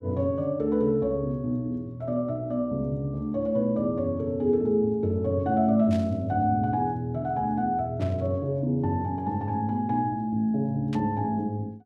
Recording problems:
static burst; at 6 s, at 8 s and at 11 s; peak -11 dB vs average level

